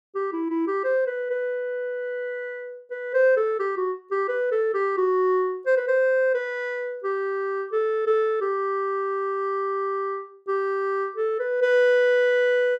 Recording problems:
none

